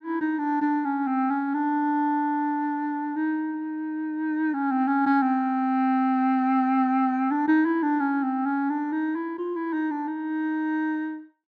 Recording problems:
none

